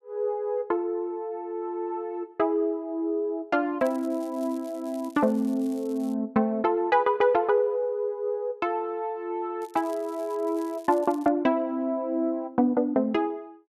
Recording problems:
crackling; from 4 to 6 s and from 9.5 to 11 s; loose cable, SNR 26 dB

